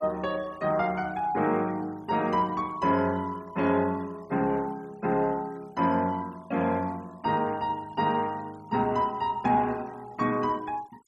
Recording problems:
noise reduction artefacts; signal-to-artefact ratio 26 dB

